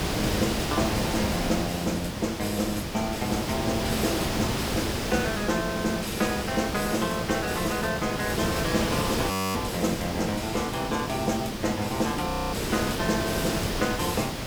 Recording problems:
hiss; slope -4 dB per octave, SNR 1 dB
frozen audio; at 9.5 s and at 12 s

